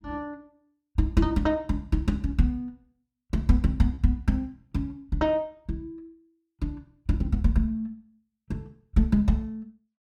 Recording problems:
packet loss; 0.6% of the sound replaced, filled with repeated pitch periods

